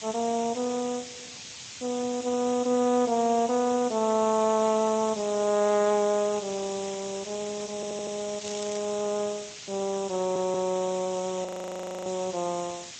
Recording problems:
lossy codec; Speex, log-spectral distance 17 dB, nothing above 13.1 kHz
hiss; SNR 11 dB
audio stuttering; at 8 s and at 10 s
crackle; at 8.5 s; loose cable, SNR 12 dB
frozen audio; at 11 s for 0.5 s

